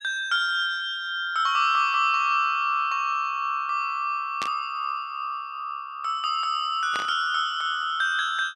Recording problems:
burst of static; at 4.5 s and at 7 s; peak -4 dB vs average level

